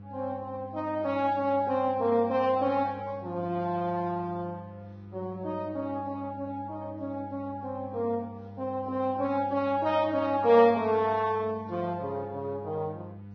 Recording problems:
lossy compression; AAC, then Vorbis, log-spectral distance 2 dB, nothing above 6 kHz
hum; 50 Hz, harmonics up to 700 Hz, SNR 16 dB

